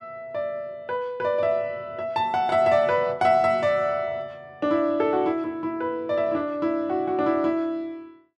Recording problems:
none

